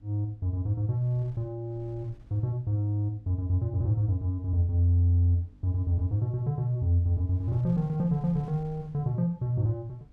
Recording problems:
electrical hum; 50 Hz, harmonics up to 300 Hz, SNR 31 dB
wind on the microphone; below 88 Hz, SNR 26 dB

